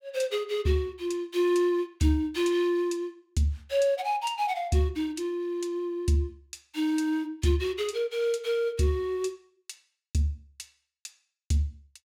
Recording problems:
none

